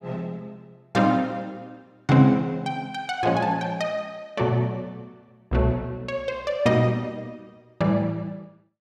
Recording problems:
none

